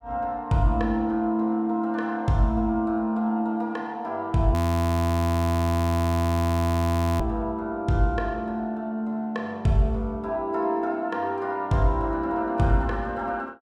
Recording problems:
audio freezing; at 4.5 s for 2.5 s

